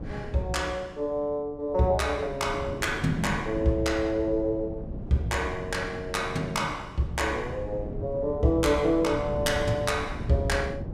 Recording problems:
wind on the microphone; below 240 Hz, SNR 10 dB

